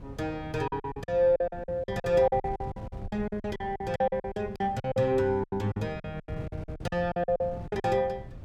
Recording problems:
wind on the microphone; below 170 Hz, SNR 14 dB
lost packets; 20% of the sound replaced, filled with silence

